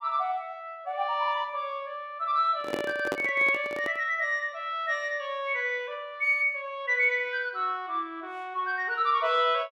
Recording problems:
microphone handling noise; from 2.5 to 4 s; peak 0 dB vs average level

